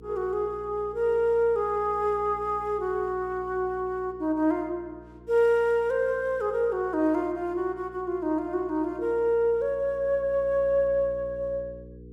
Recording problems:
electrical hum; 60 Hz, harmonics up to 480 Hz, SNR 22 dB

